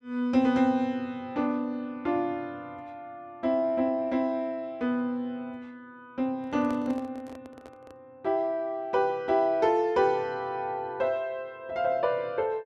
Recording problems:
microphone handling noise; from 6.5 to 8 s; peak -9 dB vs average level

